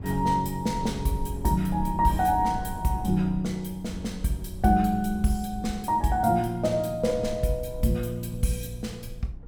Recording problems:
rumble; below 100 Hz, SNR 13 dB

